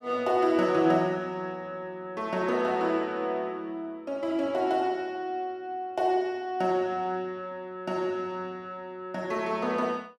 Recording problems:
none

